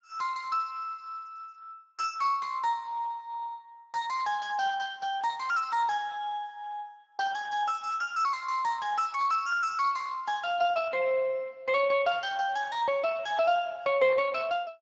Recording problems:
lossy compression; Speex, log-spectral distance 3 dB, nothing above 7.3 kHz

